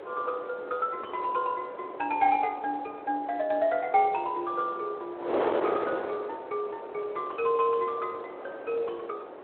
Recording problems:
telephone audio; 370 Hz to 3.4 kHz, Speex
wind on the microphone; below 820 Hz, SNR 7 dB

